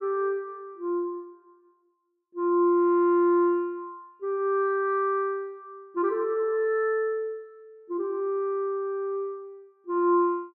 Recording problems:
none

